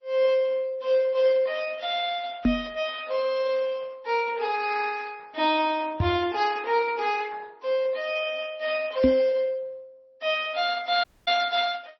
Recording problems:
lossy codec; Opus, then MP3, log-spectral distance 3 dB, nothing above 5.7 kHz
knock on the microphone; at 2.5 s, at 6 s and at 9 s; peak +7 dB vs average level
audio cutting out; at 11 s

